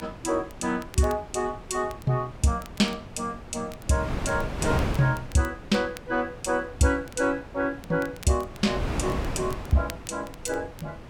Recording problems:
wind noise; below 550 Hz, SNR 8 dB
crackling; vinyl, SNR 22 dB

